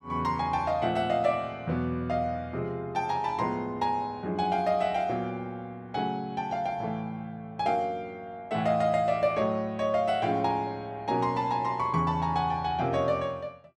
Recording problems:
none

